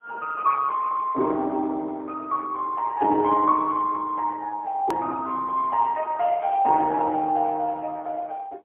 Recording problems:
telephone audio; 280 Hz to 3.6 kHz, AMR-NB, then MP3
hard cut with a click; at 5 s

